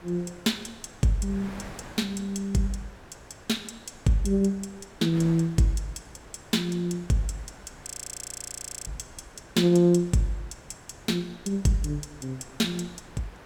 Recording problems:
wind on the microphone; below 1.6 kHz, SNR 20 dB
audio freezing; at 8 s for 1 s

